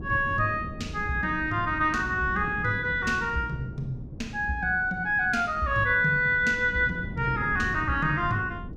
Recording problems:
wind on the microphone; below 230 Hz, SNR 13 dB

